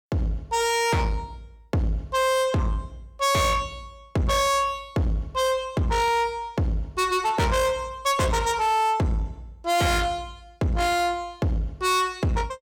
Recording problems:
distorted audio; soft clipping, signal-to-distortion ratio 8 dB

